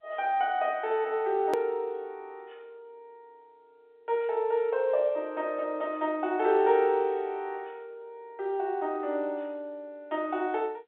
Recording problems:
telephone audio; 300 Hz to 3.8 kHz, G.711
click at an edit; at 1.5 s

